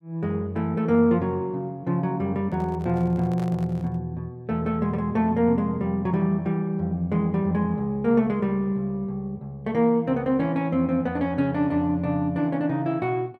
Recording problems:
handling noise; from 2.5 to 4 s; peak -11 dB vs average level

